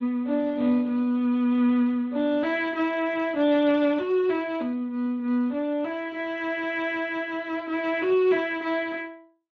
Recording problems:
lossy compression; Speex, log-spectral distance 2 dB

